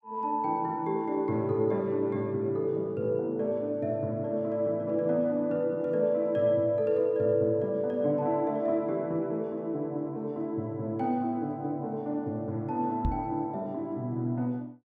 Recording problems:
knock on the microphone; at 13 s; peak +3 dB vs average level

